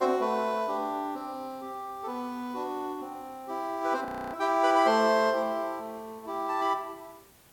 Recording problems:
hiss; slope -3 dB per octave, SNR 27 dB
audio freezing; at 4 s

